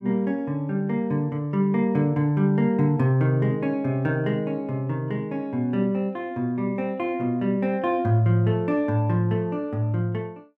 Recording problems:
none

